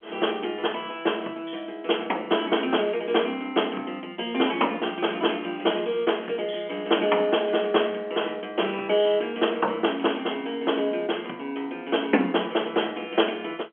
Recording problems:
telephone audio; 240 Hz to 3.3 kHz, G.711

